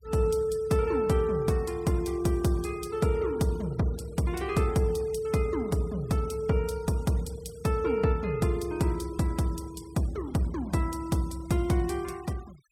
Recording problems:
denoising artefacts; signal-to-artefact ratio 23 dB

